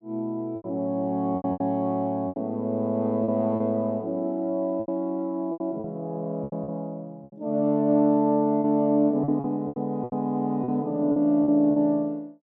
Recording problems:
lost packets; 10% of the sound replaced, filled with repeated pitch periods

